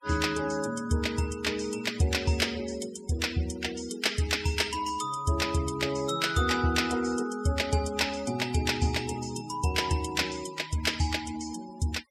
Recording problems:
denoising artefacts; signal-to-artefact ratio 15 dB

